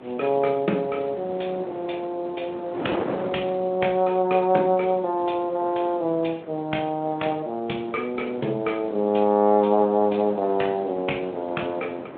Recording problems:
telephone audio; 240 Hz to 3.4 kHz, Speex
wind on the microphone; below 790 Hz, SNR 14 dB

